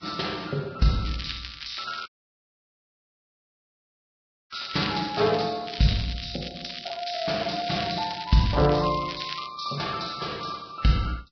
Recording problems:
lossy compression; Vorbis, log-spectral distance 12 dB, nothing above 5.3 kHz
crackling; from 1 to 5.5 s and from 5.5 to 9.5 s; loose cable, SNR 10 dB
dropout; at 2 s for 2.5 s

